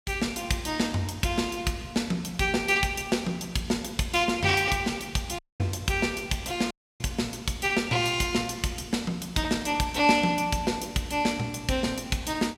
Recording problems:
audio cutting out; at 5.5 s and at 6.5 s

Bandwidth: 16.5 kHz